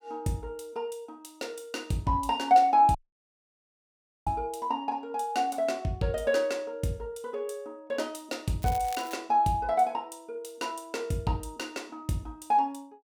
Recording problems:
audio cutting out; at 3 s for 1.5 s
crackling; at 8.5 s; loose cable, SNR 16 dB

